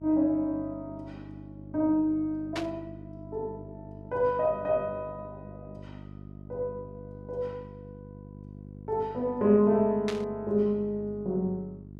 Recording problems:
hum; 50 Hz, harmonics up to 450 Hz, SNR 16 dB
static burst; at 2.5 s and at 10 s; peak -3 dB vs average level

